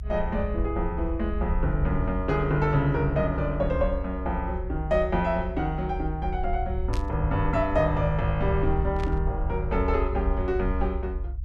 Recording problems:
rumble; below 66 Hz, SNR 4 dB
burst of static; at 7 s and at 9 s; peak -8 dB vs average level

